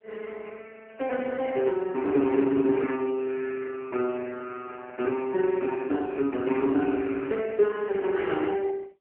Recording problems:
telephone audio; 220 Hz to 3.2 kHz, AMR-NB

